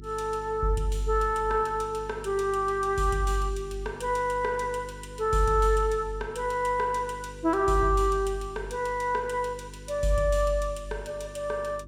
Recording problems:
electrical hum; 50 Hz, harmonics up to 400 Hz, SNR 17 dB

